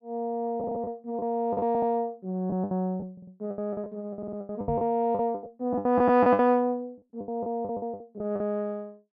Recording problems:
lost packets; 16% of the sound replaced, filled with the last packet
stutter; 4 times, first at 0.5 s
microphone thump; at 4.5 s; peak -3 dB vs average level

